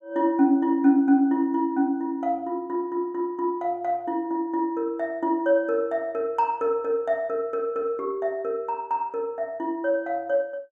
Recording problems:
none

